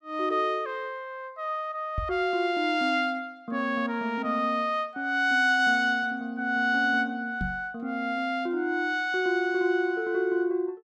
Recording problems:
knock on the microphone; at 2 s and at 7.5 s; peak -2 dB vs average level

